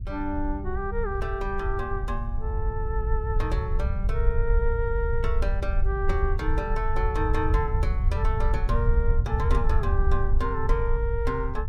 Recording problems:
low-frequency rumble; below 68 Hz, SNR -3 dB

